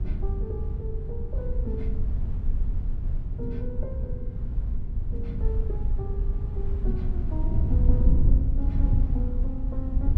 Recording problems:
rumble; below 58 Hz, SNR -6 dB
wind on the microphone; below 84 Hz, SNR -8 dB

